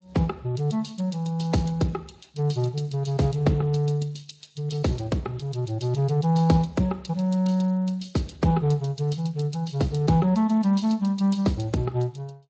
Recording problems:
codec artefacts; MP3, then Speex, log-spectral distance 4 dB, nothing above 7.8 kHz

